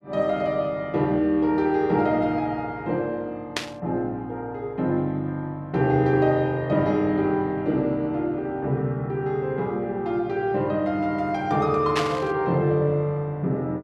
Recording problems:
static burst; at 3.5 s and at 12 s; peak +2 dB vs average level

